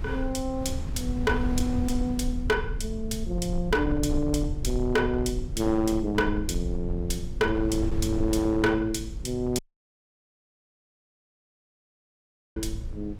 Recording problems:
distorted audio; hard clipping, uneven, signal-to-distortion ratio 11 dB
hum; 50 Hz, harmonics up to 550 Hz, SNR 18 dB
rumble; below 78 Hz, SNR 7 dB
wind noise; below 100 Hz, SNR 13 dB
dropout; at 9.5 s for 3 s

